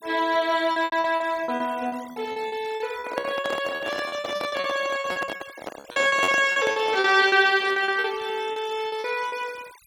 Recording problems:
noise reduction artefacts; signal-to-artefact ratio 20 dB
packet loss; 17% of the sound replaced, filled with repeated pitch periods
microphone handling noise; from 3 to 7 s; peak 0 dB vs average level

